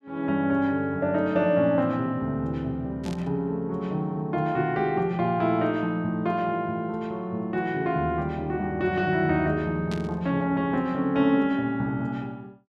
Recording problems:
burst of static; at 3 s and at 10 s; peak -9 dB vs average level

